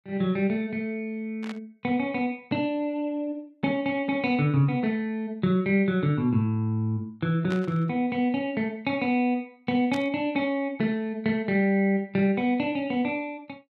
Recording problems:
static burst; at 1.5 s, at 7.5 s and at 10 s; peak -8 dB vs average level

